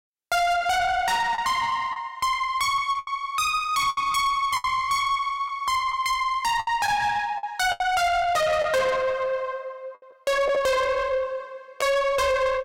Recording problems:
distortion; soft clipping, signal-to-distortion ratio 7 dB
packet loss; 5% of the sound replaced, filled with the last packet

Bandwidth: 16 kHz